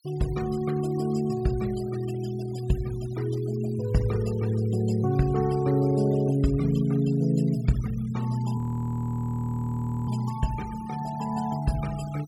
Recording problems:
noise reduction artefacts; signal-to-artefact ratio 21 dB
audio freezing; at 8.5 s for 1.5 s

